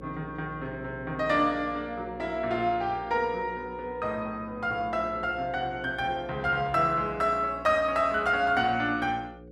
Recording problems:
hum; 60 Hz, harmonics up to 540 Hz, SNR 17 dB

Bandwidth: 14 kHz